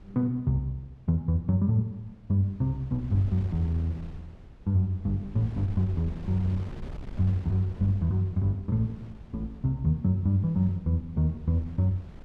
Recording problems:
wind on the microphone; below 170 Hz, SNR 17 dB

